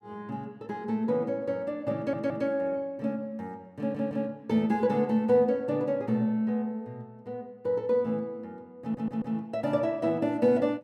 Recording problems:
stutter; at 2 s, at 4 s and at 9 s

